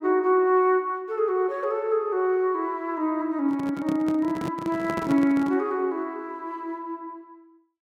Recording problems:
microphone handling noise; from 3.5 to 5.5 s; peak -2 dB vs average level

